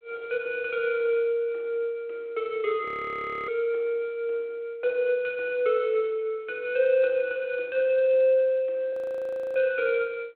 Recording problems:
phone line; 300 Hz to 3.4 kHz, G.726
frozen audio; at 3 s for 0.5 s and at 9 s for 0.5 s

